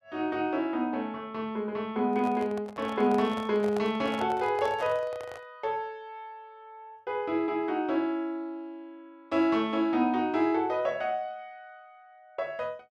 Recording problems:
handling noise; from 2 to 5.5 s; peak -5 dB vs average level

